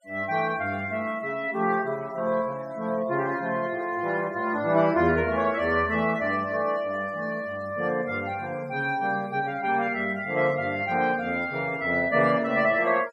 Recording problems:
denoising artefacts; signal-to-artefact ratio 23 dB

